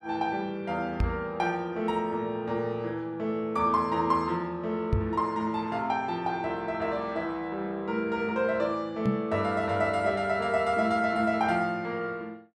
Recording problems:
microphone thump; at 1 s, at 5 s and at 9 s; peak +5 dB vs average level

